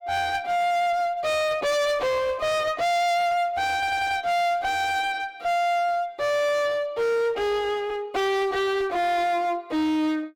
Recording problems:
distorted audio; hard clipping, uneven, signal-to-distortion ratio 4 dB
audio stuttering; at 4 s

